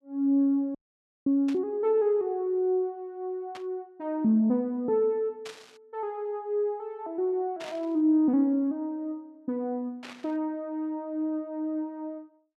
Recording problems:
audio cutting out; at 1 s for 0.5 s
static burst; 5 times, first at 1.5 s; peak -10 dB vs average level

